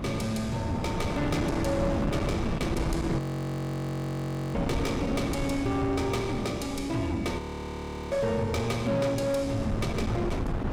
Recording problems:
distortion; soft clipping, signal-to-distortion ratio 12 dB
wind noise; below 460 Hz, SNR 3 dB
frozen audio; at 3 s for 1.5 s and at 7.5 s for 0.5 s

